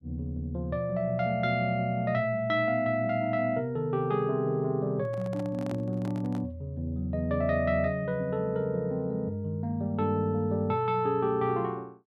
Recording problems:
handling noise; from 5 to 6.5 s; peak -9 dB vs average level

